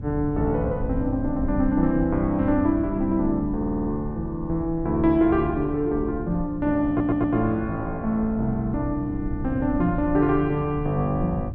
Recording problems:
electrical hum; 60 Hz, harmonics up to 780 Hz, SNR 22 dB
rumble; below 98 Hz, SNR 11 dB
stutter; at 3.5 s and at 7 s

